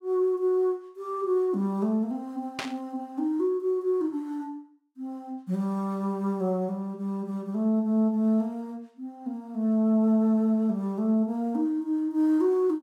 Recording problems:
burst of static; at 2.5 s; peak -1 dB vs average level

